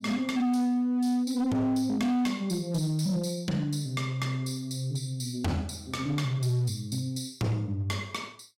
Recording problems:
distortion; hard clipping, signal-to-distortion ratio 11 dB

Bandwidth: 16 kHz